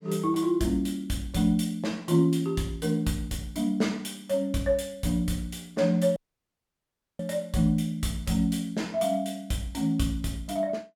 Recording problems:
audio cutting out; at 6 s for 1 s

